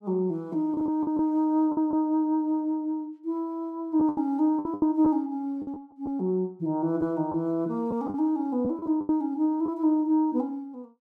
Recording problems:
lost packets; 7% of the sound replaced, filled with the last packet

